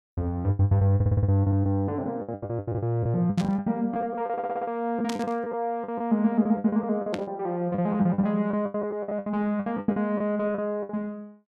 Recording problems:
lost packets; 18% of the sound replaced, filled with the last packet
audio stuttering; at 1 s and at 4.5 s
burst of static; at 3.5 s, at 5 s and at 7 s; peak -4 dB vs average level

